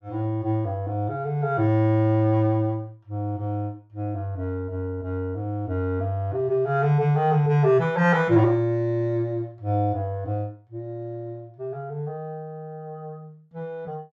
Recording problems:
none

